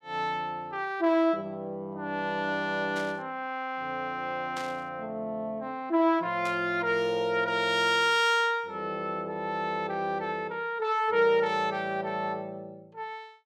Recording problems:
static burst; at 3 s, at 4.5 s and at 6.5 s; peak -8 dB vs average level

